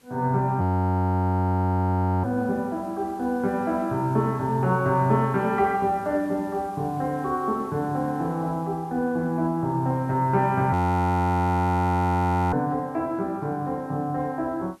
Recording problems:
hiss; slope -3 dB per octave, SNR 29 dB
audio freezing; at 0.5 s for 1.5 s and at 11 s for 2 s

